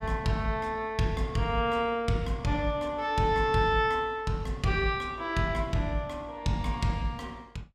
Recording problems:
none

